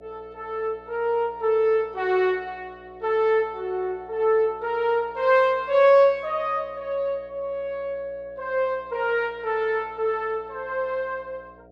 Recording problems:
electrical hum; 60 Hz, harmonics up to 720 Hz, SNR 26 dB

